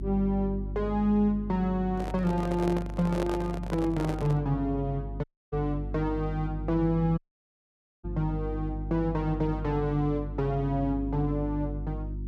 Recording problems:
mains hum; 50 Hz, harmonics up to 350 Hz, SNR 7 dB
handling noise; from 2 to 4.5 s; peak -1 dB vs average level
dropout; at 5 s and at 7 s for 1 s

